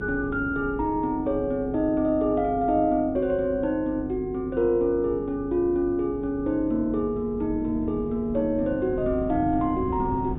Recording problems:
low-pass filter; nothing above 4 kHz
hum; 50 Hz, harmonics up to 450 Hz, SNR 13 dB
wind on the microphone; below 230 Hz, SNR 15 dB

